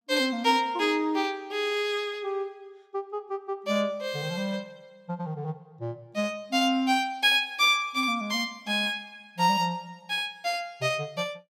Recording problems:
none

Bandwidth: 16 kHz